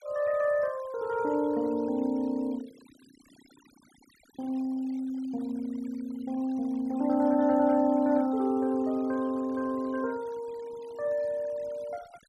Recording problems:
noise reduction artefacts; signal-to-artefact ratio 25 dB

